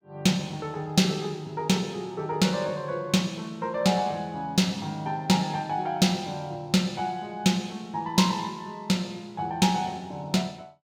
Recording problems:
none

